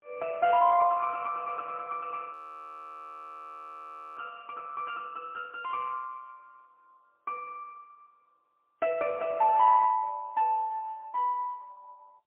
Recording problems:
phone line; 280 Hz to 3.5 kHz, AMR-NB, then MP3
audio freezing; at 2.5 s for 2 s

